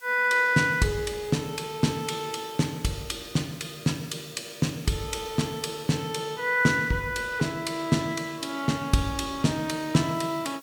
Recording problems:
background hiss; slope +2 dB per octave, SNR 22 dB

